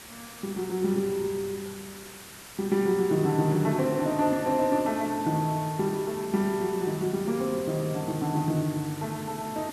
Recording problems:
hiss; slope -1 dB per octave, SNR 15 dB

